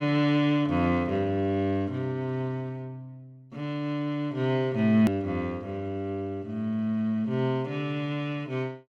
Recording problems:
hard cut with a click; at 5 s

